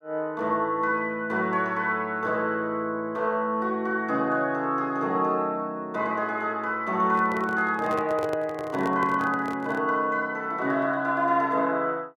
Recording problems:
handling noise; from 7 to 10 s; peak -3 dB vs average level

